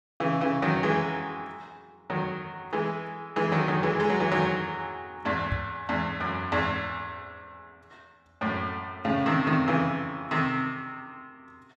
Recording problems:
microphone bump; at 5.5 s; peak +1 dB vs average level

